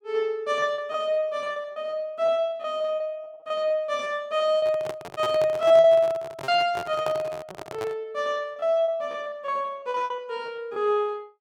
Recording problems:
lost packets; 14% of the sound replaced, filled with repeated pitch periods
microphone handling noise; from 4.5 to 8 s; peak -3 dB vs average level

